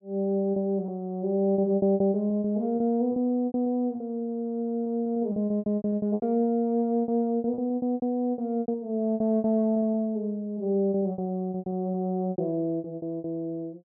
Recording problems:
packet loss; 16% of the sound replaced, filled with repeated pitch periods

